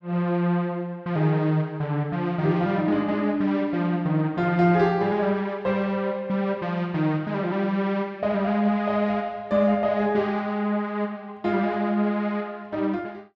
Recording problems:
none

